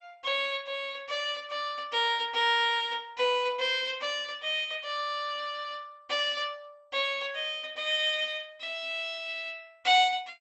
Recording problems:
lossy codec; MP2, log-spectral distance 4 dB, nothing above 8 kHz

